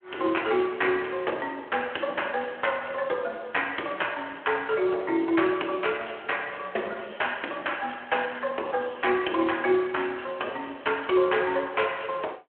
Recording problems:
telephone audio; 280 Hz to 3.3 kHz, Speex

